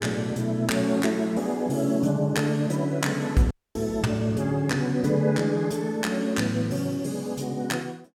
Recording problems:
dropout; at 3.5 s

